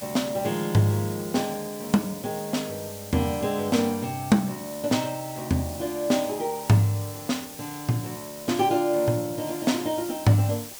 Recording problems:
hiss; slope +1 dB per octave, SNR 13 dB

